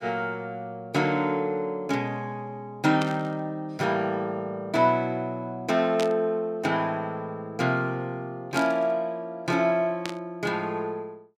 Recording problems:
static burst; 4 times, first at 3 s; peak -2 dB vs average level

